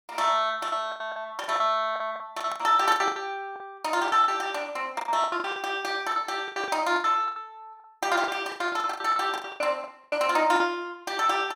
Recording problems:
lost packets; 18% of the sound replaced, filled with the last packet

